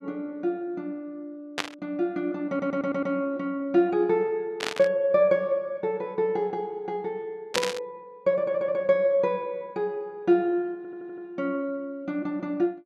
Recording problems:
burst of static; at 1.5 s, at 4.5 s and at 7.5 s; peak +4 dB vs average level
stutter; at 2.5 s, at 8.5 s and at 11 s

